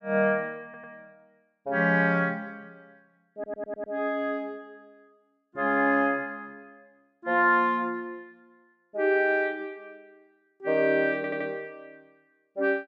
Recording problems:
audio stuttering; at 0.5 s, at 3.5 s and at 11 s

